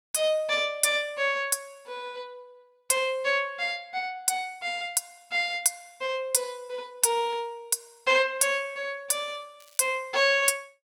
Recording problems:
crackle; at 9.5 s; loose cable, SNR 30 dB

